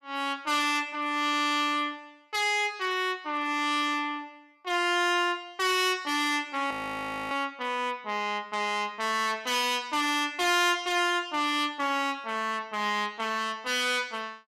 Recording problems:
distortion; hard clipping, signal-to-distortion ratio 10 dB
frozen audio; at 6.5 s for 0.5 s

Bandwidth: 14.5 kHz